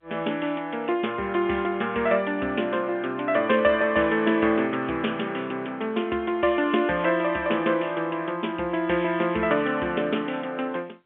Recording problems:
phone line; 190 Hz to 3.4 kHz, G.711

